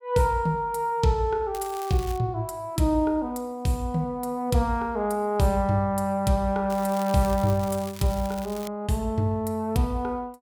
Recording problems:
crackling; at 1.5 s and from 6.5 to 8.5 s; loose cable, SNR 17 dB

